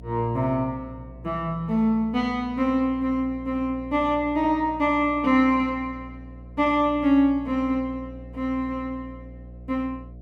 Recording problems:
mains hum; 60 Hz, harmonics up to 660 Hz, SNR 18 dB

